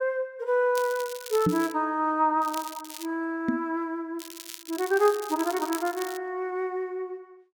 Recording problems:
crackling; at 1 s, at 2.5 s and from 4 to 6 s; loose cable, SNR 13 dB
knock on the microphone; at 1.5 s and at 3.5 s; peak +7 dB vs average level

